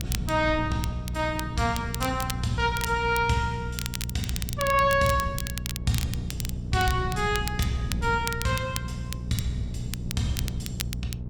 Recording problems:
hum; 60 Hz, harmonics up to 480 Hz, SNR 8 dB
wind noise; below 160 Hz, SNR 10 dB
crackle; vinyl, SNR 10 dB

